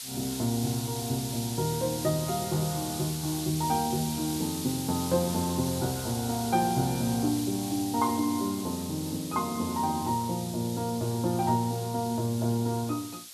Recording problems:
hiss; SNR 8 dB

